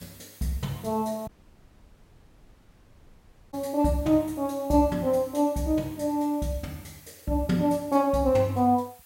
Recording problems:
background hiss; slope 0 dB per octave, SNR 24 dB
dropout; at 1.5 s for 2.5 s

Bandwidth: 16 kHz